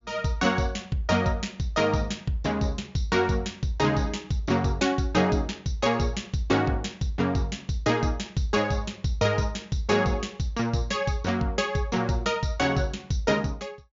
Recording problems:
treble missing; nothing above 7.3 kHz

